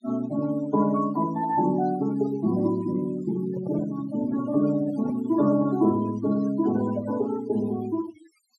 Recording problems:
denoising artefacts; signal-to-artefact ratio 18 dB
microphone handling noise; from 3.5 to 5.5 s; peak -9 dB vs average level

